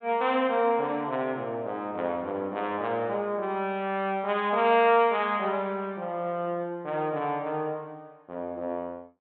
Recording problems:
treble cut off; nothing above 4 kHz

